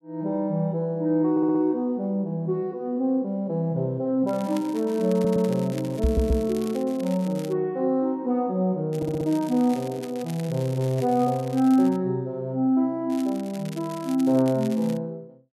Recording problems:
audio stuttering; 4 times, first at 1.5 s
crackling; from 4.5 to 7.5 s, from 9 to 12 s and from 13 to 15 s; loose cable, SNR 21 dB
microphone thump; at 6 s; peak +5 dB vs average level

